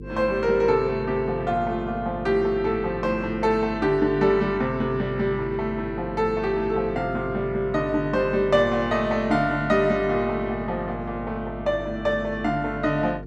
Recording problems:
hum; 50 Hz, harmonics up to 450 Hz, SNR 13 dB

